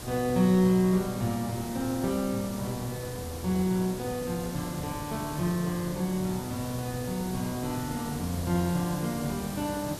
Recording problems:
hiss; SNR 9 dB

